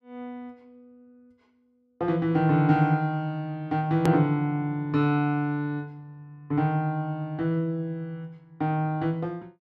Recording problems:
hard cut with a click; at 4 s

